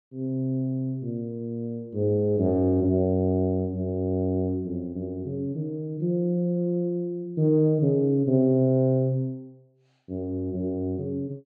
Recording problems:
none

